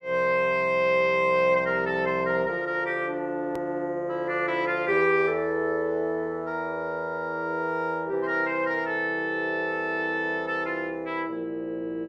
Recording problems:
edit click; at 3.5 s

